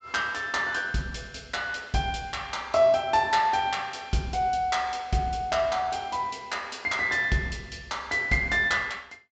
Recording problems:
treble cut off; nothing above 8 kHz

